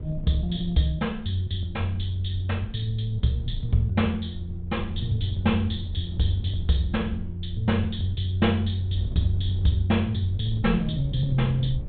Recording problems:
low-pass filter; nothing above 4 kHz
wind noise; below 94 Hz, SNR 11 dB

